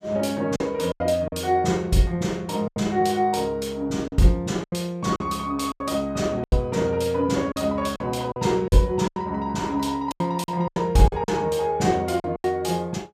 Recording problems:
packet loss; 9% of the sound replaced, filled with silence

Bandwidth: 15 kHz